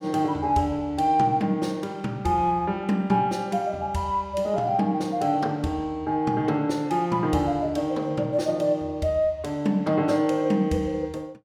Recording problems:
none

